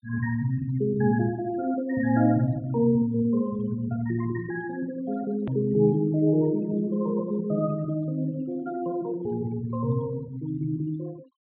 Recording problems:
treble cut off; nothing above 4 kHz
noise reduction artefacts; signal-to-artefact ratio 25 dB
edit click; at 5.5 s

